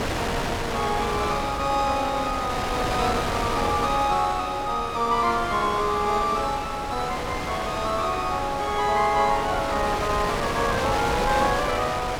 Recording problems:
wind on the microphone; below 2 kHz, SNR 4 dB

